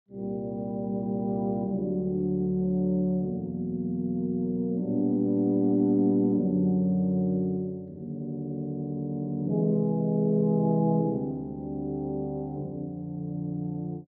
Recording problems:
none

